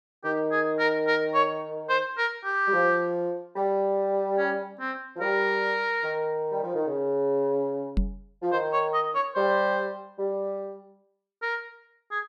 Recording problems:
microphone thump; at 8 s; peak +3 dB vs average level

